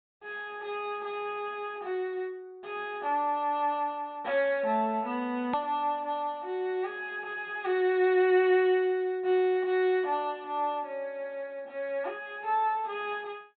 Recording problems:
treble missing; nothing above 4 kHz
hard cut with a click; at 5.5 s

